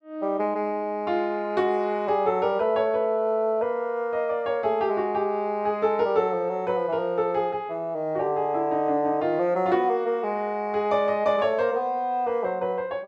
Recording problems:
none

